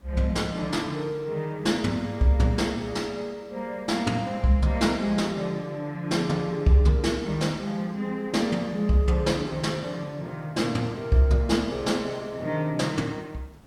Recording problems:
hiss; slope -6 dB per octave, SNR 29 dB

